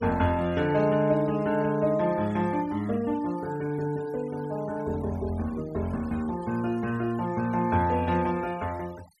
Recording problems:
denoising artefacts; signal-to-artefact ratio 21 dB

